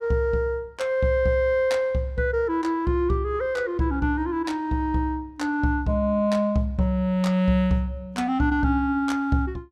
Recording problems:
none

